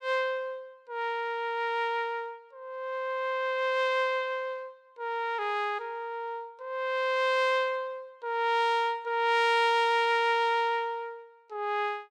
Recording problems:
none

